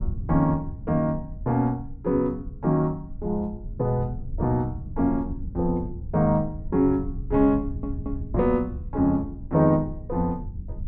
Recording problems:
low-frequency rumble; below 110 Hz, SNR 11 dB
audio stuttering; at 7.5 s

